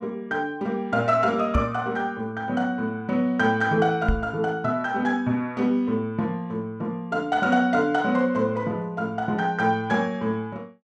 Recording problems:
knock on the microphone; at 1.5 s and at 4 s; peak +4 dB vs average level

